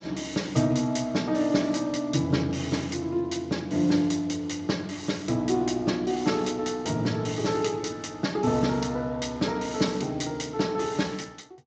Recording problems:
codec artefacts; Speex, log-spectral distance 4 dB, nothing above 7.3 kHz

